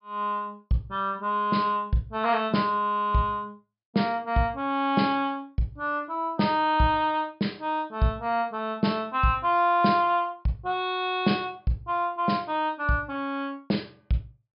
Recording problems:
treble missing; nothing above 5.5 kHz

